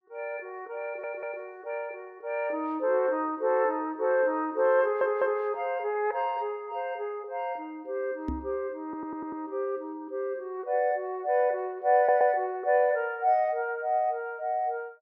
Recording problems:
stutter; 4 times, first at 1 s
microphone thump; at 8.5 s; peak -1 dB vs average level

